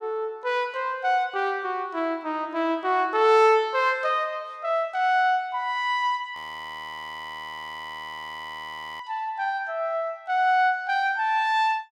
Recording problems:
audio freezing; at 6.5 s for 2.5 s

